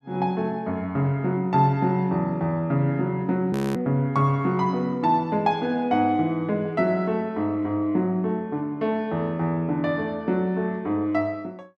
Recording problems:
audio freezing; at 3.5 s

